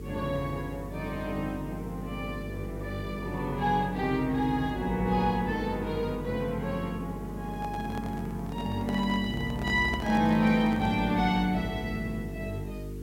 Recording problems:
hum; 50 Hz, harmonics up to 450 Hz, SNR 9 dB
background hiss; slope -2 dB per octave, SNR 27 dB
handling noise; from 7.5 to 11 s; peak -5 dB vs average level

